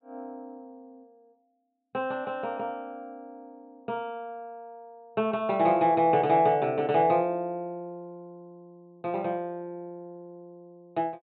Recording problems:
treble missing; nothing above 4 kHz

